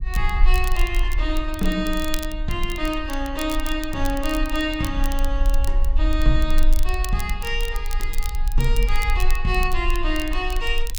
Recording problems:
low-frequency rumble; below 40 Hz, strongest tone 22 Hz, SNR 0 dB
crackle; vinyl, SNR 12 dB

